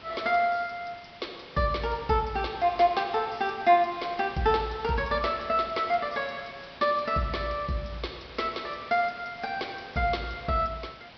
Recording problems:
treble cut off; nothing above 5.5 kHz
hiss; SNR 18 dB

